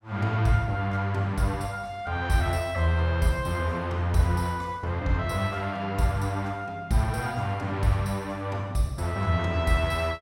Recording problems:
none

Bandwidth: 16 kHz